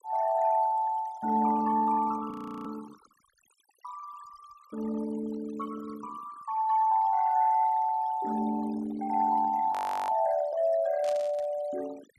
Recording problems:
noise reduction artefacts; signal-to-artefact ratio 20 dB
audio freezing; at 2.5 s and at 9.5 s
static burst; at 11 s; peak -12 dB vs average level

